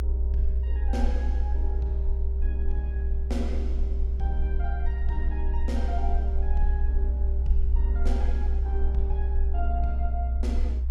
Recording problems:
low-frequency rumble; below 64 Hz, strongest tone 62 Hz, SNR -10 dB
wind on the microphone; below 250 Hz, SNR 18 dB

